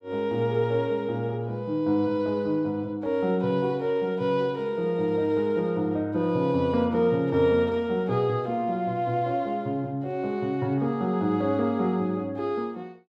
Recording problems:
none

